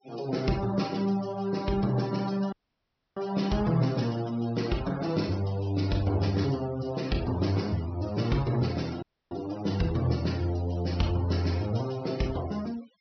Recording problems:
treble cut off; nothing above 5.8 kHz
noise reduction artefacts; signal-to-artefact ratio 18 dB
dropout; at 2.5 s for 0.5 s and at 9 s

